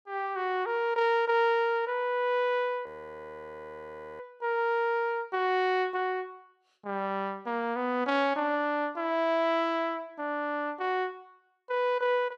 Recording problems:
audio freezing; at 3 s for 1.5 s

